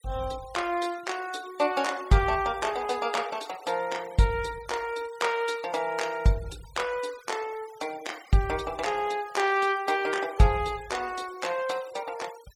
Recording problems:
noise reduction artefacts; signal-to-artefact ratio 20 dB

